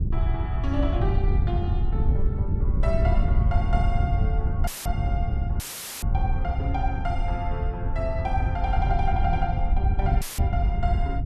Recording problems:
wind on the microphone; below 94 Hz, SNR -6 dB
audio cutting out; at 4.5 s, at 5.5 s and at 10 s; filled with static

